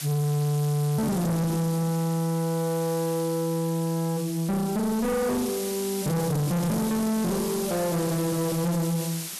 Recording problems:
distorted audio; soft clipping, signal-to-distortion ratio 7 dB
background hiss; slope +1 dB per octave, SNR 9 dB

